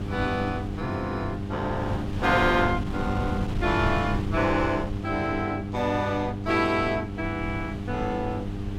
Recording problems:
hum; 50 Hz, harmonics up to 800 Hz, SNR 6 dB
wind noise; below 200 Hz, SNR 7 dB

